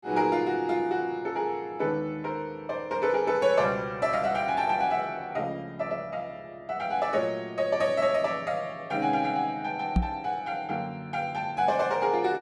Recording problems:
microphone thump; at 10 s; peak +7 dB vs average level

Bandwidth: 12.5 kHz